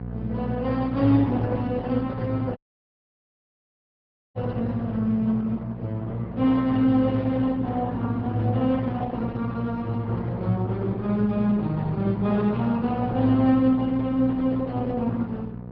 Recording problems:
low-pass filter; nothing above 5.5 kHz
lossy compression; Opus, log-spectral distance 2 dB
hum; 60 Hz, harmonics up to 780 Hz, SNR 10 dB
audio cutting out; at 2.5 s for 2 s

